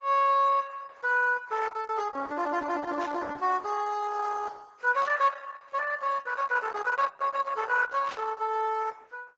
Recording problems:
lossy compression; AAC, then Opus, log-spectral distance 4 dB, nothing above 7.1 kHz
burst of static; at 3 s, at 5 s and at 8 s; peak -14 dB vs average level

